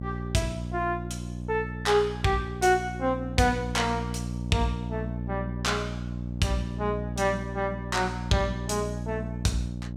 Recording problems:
electrical hum; 60 Hz, harmonics up to 600 Hz, SNR 6 dB

